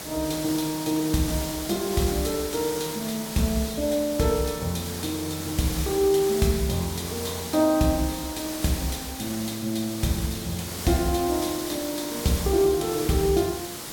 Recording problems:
hiss; slope -2 dB per octave, SNR 7 dB

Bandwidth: 17 kHz